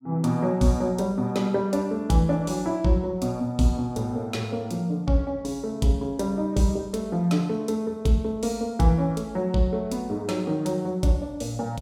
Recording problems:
none

